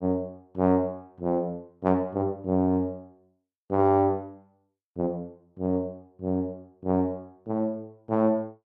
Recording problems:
none

